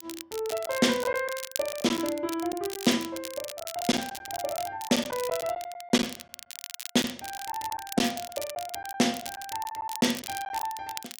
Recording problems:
crackle; vinyl, SNR 10 dB
lost packets; 6% of the sound replaced, filled with silence

